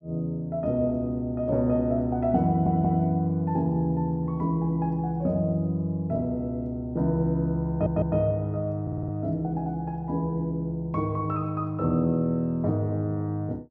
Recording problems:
audio stuttering; at 2.5 s, at 7.5 s and at 9 s

